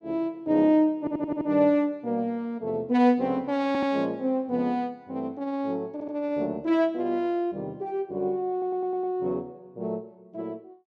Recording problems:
audio stuttering; 4 times, first at 1 s

